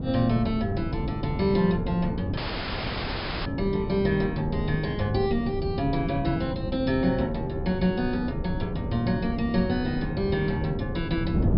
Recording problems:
low-pass filter; nothing above 5.5 kHz
wind on the microphone; below 250 Hz, SNR 5 dB
audio cutting out; at 2.5 s for 1 s

